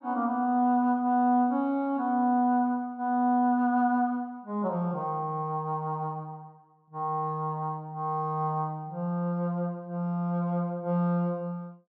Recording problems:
none

